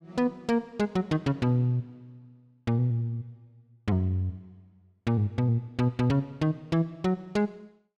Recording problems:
none

